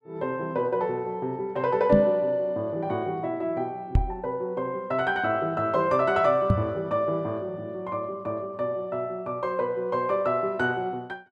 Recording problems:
knock on the microphone; at 2 s, at 4 s and at 6.5 s; peak +8 dB vs average level

